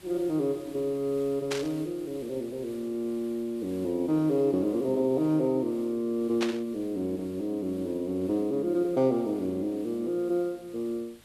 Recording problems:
hiss; slope -2 dB per octave, SNR 24 dB
burst of static; at 1.5 s and at 6.5 s; peak 0 dB vs average level

